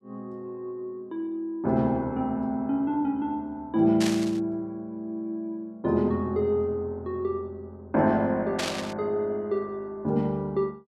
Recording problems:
static burst; at 4 s and at 8.5 s; peak +1 dB vs average level

